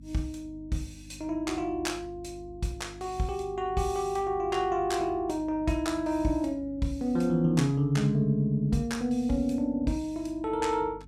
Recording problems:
electrical hum; 50 Hz, harmonics up to 300 Hz, SNR 20 dB

